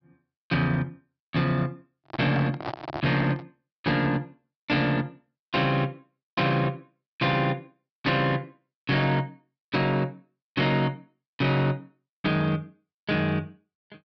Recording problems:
treble cut off; nothing above 5.5 kHz
distorted audio; hard clipping, signal-to-distortion ratio 11 dB
microphone handling noise; from 2 to 3.5 s; peak -2 dB vs average level

